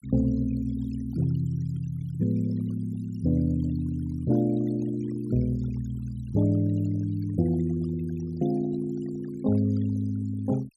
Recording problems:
denoising artefacts; signal-to-artefact ratio 21 dB

